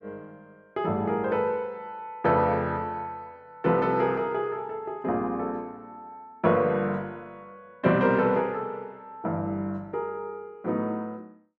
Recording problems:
none

